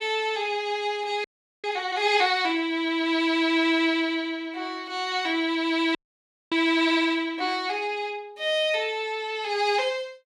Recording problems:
frozen audio; at 1 s and at 6 s for 0.5 s

